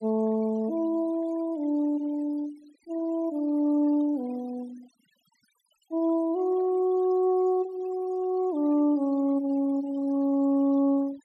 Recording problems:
noise reduction artefacts; signal-to-artefact ratio 26 dB

